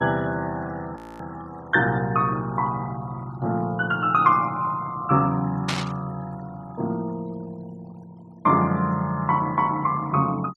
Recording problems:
denoising artefacts; signal-to-artefact ratio 25 dB
audio freezing; at 1 s
static burst; at 5.5 s; peak +1 dB vs average level

